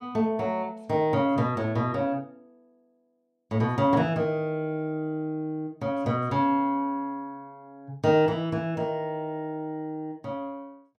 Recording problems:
none

